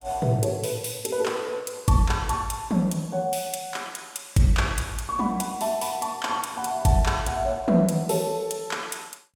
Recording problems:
none

